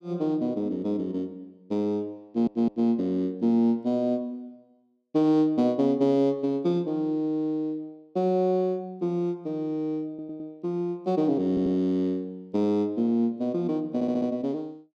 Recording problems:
audio stuttering; 4 times, first at 2.5 s

